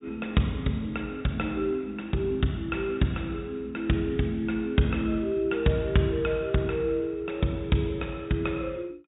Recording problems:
treble cut off; nothing above 4 kHz

